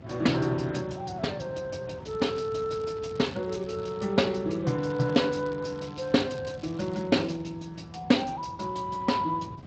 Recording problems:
lossy codec; Speex, log-spectral distance 5 dB, nothing above 7.8 kHz
wind noise; below 290 Hz, SNR 16 dB
crackle; from 2 to 4 s and from 5 to 7.5 s; loose cable, SNR 24 dB

